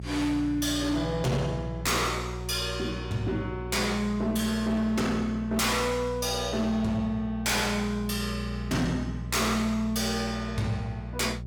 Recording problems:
distortion; hard clipping, signal-to-distortion ratio 8 dB
hum; 60 Hz, harmonics up to 420 Hz, SNR 9 dB

